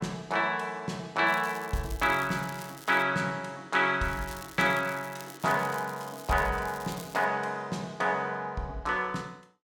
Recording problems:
crackling; from 1.5 to 3 s and from 4 to 7 s; loose cable, SNR 18 dB

